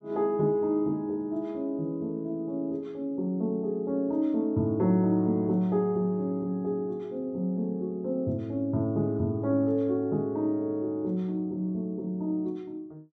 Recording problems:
none

